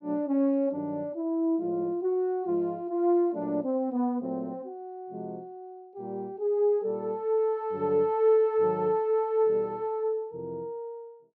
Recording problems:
none

